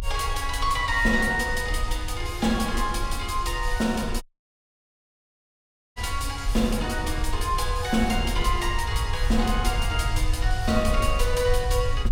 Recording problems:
rumble; below 66 Hz, SNR 4 dB
audio cutting out; at 4 s for 1.5 s

